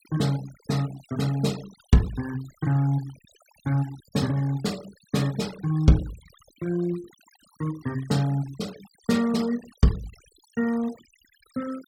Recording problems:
noise reduction artefacts; signal-to-artefact ratio 19 dB

